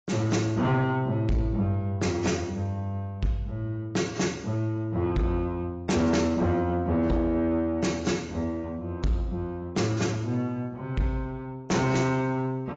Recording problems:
lossy codec; AAC, log-spectral distance 2 dB, nothing above 7.3 kHz
distorted audio; soft clipping, signal-to-distortion ratio 11 dB

